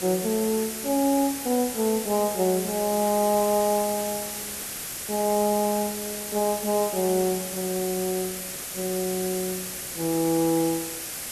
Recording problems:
hiss; slope -1 dB per octave, SNR 6 dB

